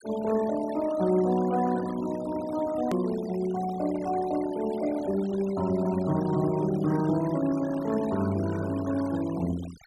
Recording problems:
denoising artefacts; signal-to-artefact ratio 17 dB
click at an edit; at 3 s

